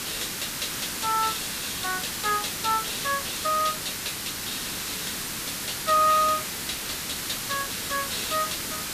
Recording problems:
background hiss; SNR 2 dB

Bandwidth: 14.5 kHz